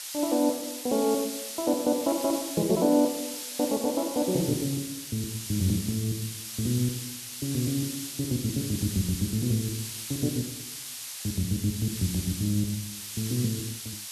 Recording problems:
background hiss; slope +4 dB per octave, SNR 6 dB

